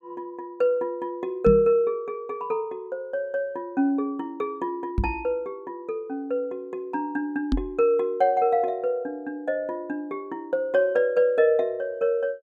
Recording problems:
microphone thump; at 1.5 s, at 5 s and at 7.5 s; peak +6 dB vs average level

